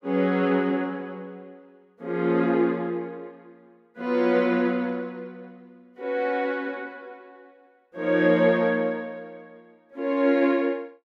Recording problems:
none

